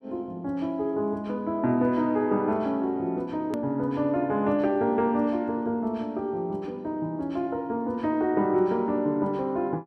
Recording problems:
edit click; at 3.5 s

